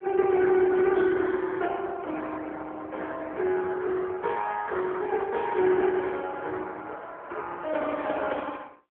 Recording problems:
telephone audio; 300 Hz to 3.3 kHz, AMR-NB

